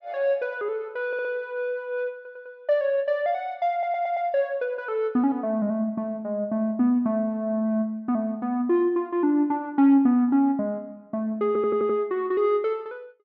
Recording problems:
stutter; 4 times, first at 1 s

